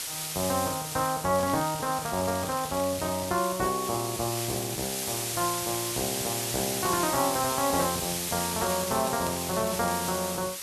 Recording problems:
background hiss; slope +2 dB per octave, SNR 2 dB
crackling; 4 times, first at 1.5 s; loose cable, SNR 13 dB

